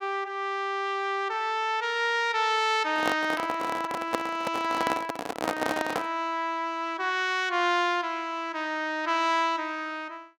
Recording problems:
handling noise; from 3 to 6 s; peak +3 dB vs average level

